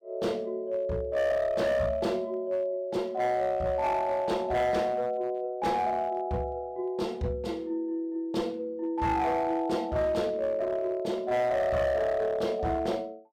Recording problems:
distortion; hard clipping, uneven, signal-to-distortion ratio 11 dB

